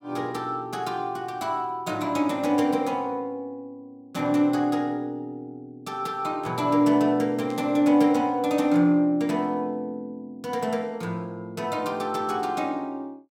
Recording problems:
burst of static; at 7.5 s; peak -16 dB vs average level

